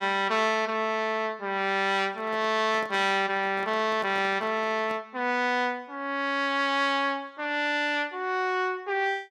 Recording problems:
handling noise; from 2 to 5 s; peak -12 dB vs average level

